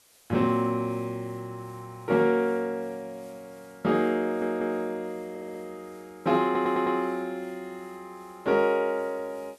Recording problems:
background hiss; slope 0 dB per octave, SNR 30 dB
stutter; at 4 s, at 5.5 s and at 6.5 s

